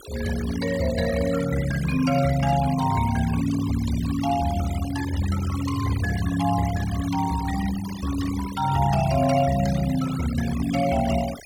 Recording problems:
denoising artefacts; signal-to-artefact ratio 13 dB

